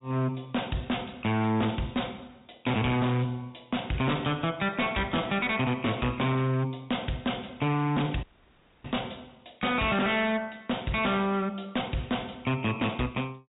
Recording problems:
low-pass filter; nothing above 4 kHz
distorted audio; hard clipping, signal-to-distortion ratio 6 dB
audio cutting out; at 8 s for 0.5 s

